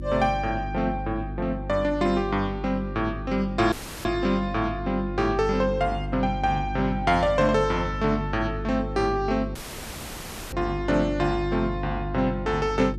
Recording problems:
hum; 50 Hz, harmonics up to 350 Hz, SNR 8 dB
audio cutting out; at 3.5 s and at 9.5 s for 1 s

